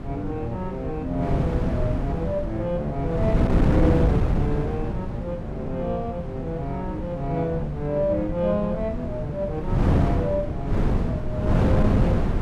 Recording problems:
wind noise; below 240 Hz, SNR -2 dB

